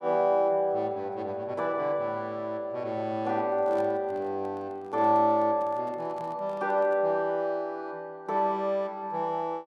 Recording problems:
handling noise; from 3.5 to 7 s; peak -12 dB vs average level

